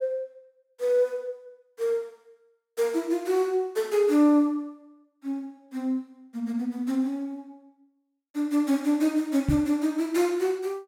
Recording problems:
microphone thump; at 9.5 s; peak +4 dB vs average level

